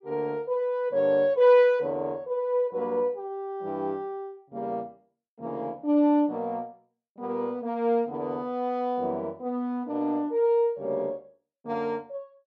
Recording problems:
none

